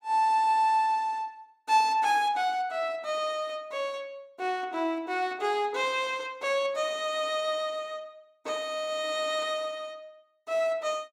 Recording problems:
none

